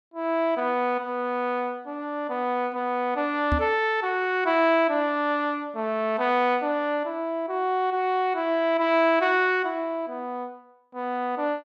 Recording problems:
microphone thump; at 3.5 s; peak +2 dB vs average level

